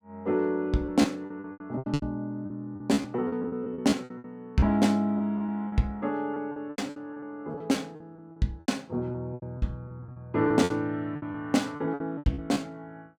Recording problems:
packet loss; 16% of the sound replaced, filled with repeated pitch periods

